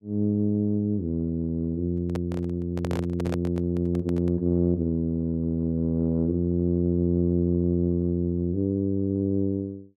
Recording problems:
microphone handling noise; from 2 to 4.5 s; peak -3 dB vs average level

